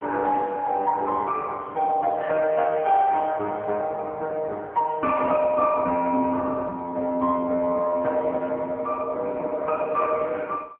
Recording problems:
phone line; 280 Hz to 3.2 kHz, AMR-NB

